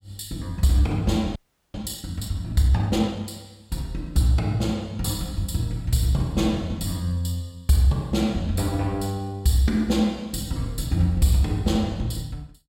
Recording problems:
audio freezing; at 1.5 s

